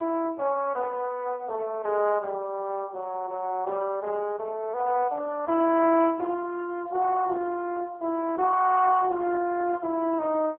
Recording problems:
phone line; 280 Hz to 2.6 kHz, AMR-NB

